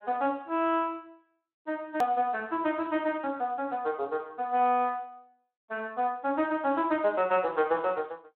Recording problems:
phone line; 320 Hz to 3.3 kHz, Speex
click at an edit; at 2 s

